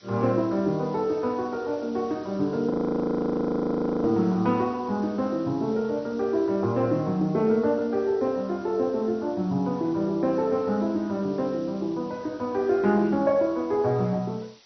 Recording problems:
codec artefacts; MP2, log-spectral distance 4 dB
hiss; slope 0 dB per octave, SNR 28 dB
audio freezing; at 2.5 s for 1.5 s

